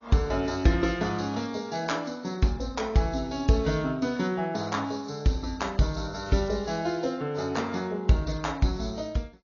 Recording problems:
treble cut off; nothing above 6.5 kHz
lossy codec; AAC, log-spectral distance 4 dB

